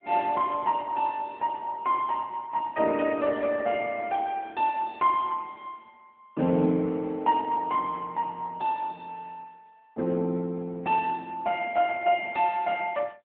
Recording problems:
telephone audio; 130 Hz to 3.6 kHz, AMR-NB

